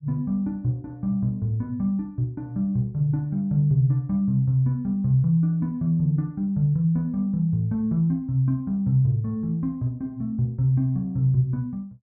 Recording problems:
none

